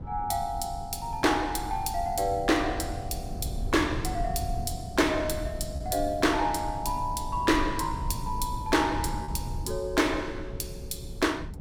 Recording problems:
rumble; below 130 Hz, SNR 9 dB
lost packets; 0.7% of the sound replaced, filled with repeated pitch periods

